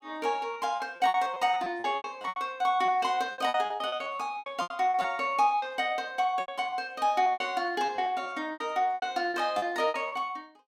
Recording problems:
packet loss; 17% of the sound replaced, filled with repeated pitch periods

